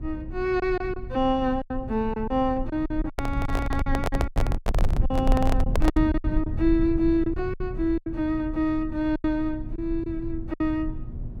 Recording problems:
hum; 60 Hz, harmonics up to 720 Hz, SNR 18 dB
rumble; below 76 Hz, SNR 5 dB
packet loss; 11% of the sound replaced, filled with silence
microphone handling noise; from 3 to 6 s; peak +2 dB vs average level

